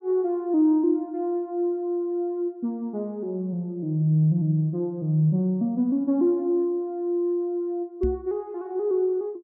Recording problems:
knock on the microphone; at 8 s; peak -1 dB vs average level

